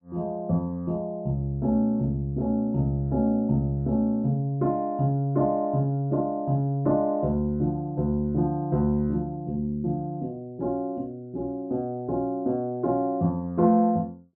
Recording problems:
none

